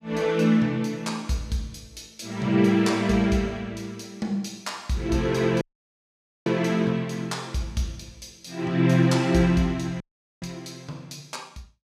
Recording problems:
audio cutting out; at 5.5 s for 1 s and at 10 s

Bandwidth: 15 kHz